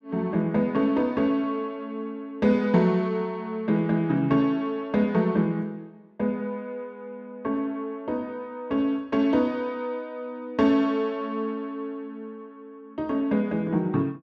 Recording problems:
none

